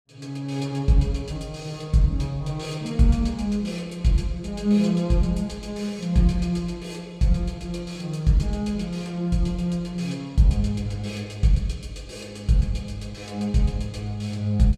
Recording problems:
none

